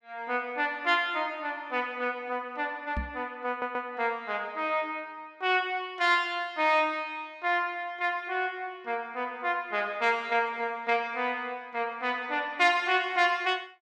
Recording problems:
microphone bump; at 3 s; peak -1 dB vs average level
audio stuttering; at 3.5 s

